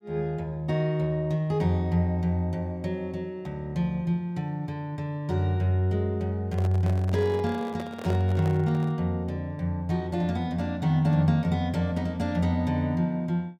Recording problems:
microphone handling noise; from 6.5 to 9 s; peak -6 dB vs average level

